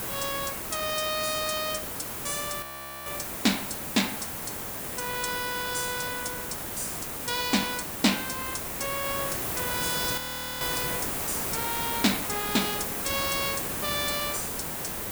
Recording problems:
hiss; slope -4 dB per octave, SNR 0 dB
audio freezing; at 2.5 s and at 10 s

